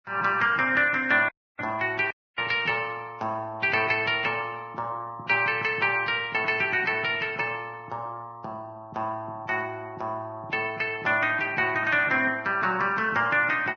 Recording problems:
low-pass filter; nothing above 6.6 kHz
lossy compression; Vorbis, log-spectral distance 3 dB
dropout; at 1.5 s and at 2 s

